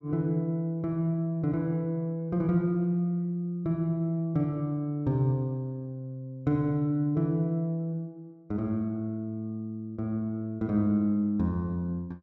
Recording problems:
none

